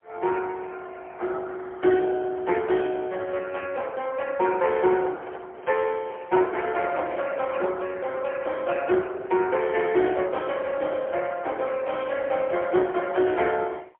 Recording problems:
telephone audio; 320 Hz to 3.2 kHz, AMR-NB, then MP3
microphone handling noise; from 5 to 7 s; peak -8 dB vs average level

